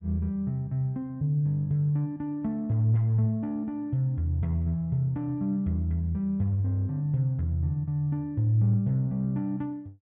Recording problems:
none

